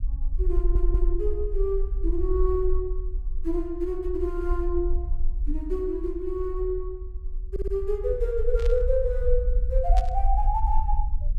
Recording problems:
low-frequency rumble; below 46 Hz, strongest tone 20 Hz, SNR 0 dB
stutter; at 0.5 s and at 7.5 s
burst of static; at 8.5 s and at 10 s; peak -7 dB vs average level

